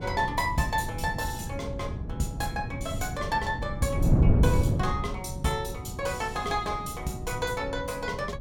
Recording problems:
wind noise; below 170 Hz, SNR 0 dB

